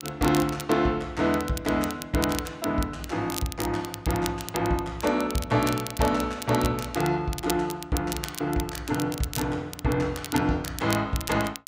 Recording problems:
crackle; vinyl, SNR 10 dB

